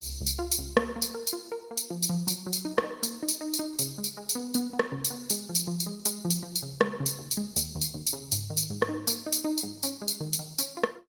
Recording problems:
codec artefacts; Opus, log-spectral distance 6 dB, nothing above 18 kHz

